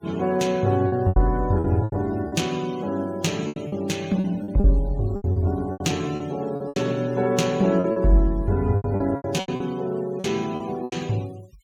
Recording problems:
denoising artefacts; signal-to-artefact ratio 23 dB
lost packets; 13% of the sound replaced, filled with repeated pitch periods

